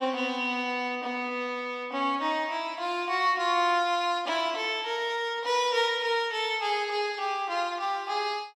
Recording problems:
none

